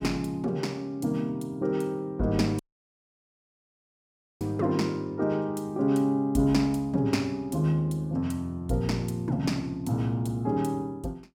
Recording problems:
dropout; at 2.5 s for 2 s

